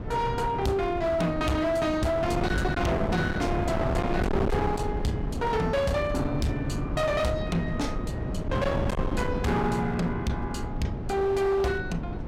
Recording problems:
distortion; hard clipping, signal-to-distortion ratio 6 dB
wind noise; below 390 Hz, SNR 4 dB

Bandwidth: 16 kHz